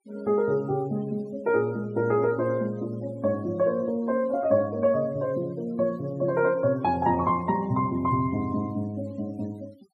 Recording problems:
denoising artefacts; signal-to-artefact ratio 26 dB

